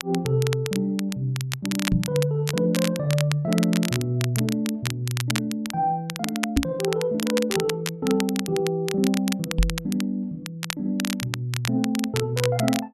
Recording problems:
crackle; vinyl, SNR 7 dB
microphone bump; at 2 s, at 6.5 s and at 9.5 s; peak +7 dB vs average level

